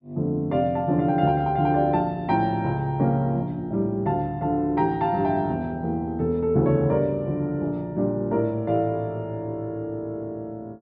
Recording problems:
low-pass filter; nothing above 5.5 kHz

